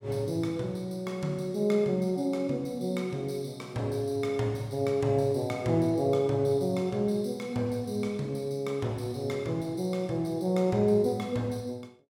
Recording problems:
none

